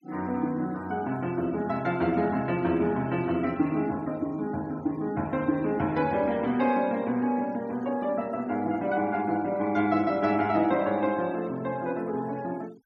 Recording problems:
denoising artefacts; signal-to-artefact ratio 25 dB

